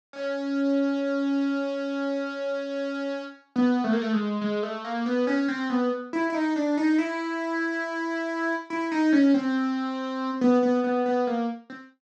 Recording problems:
none

